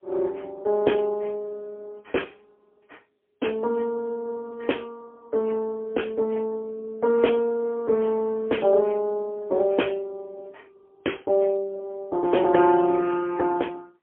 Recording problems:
telephone audio; 240 Hz to 3.3 kHz, AMR-NB, then MP3

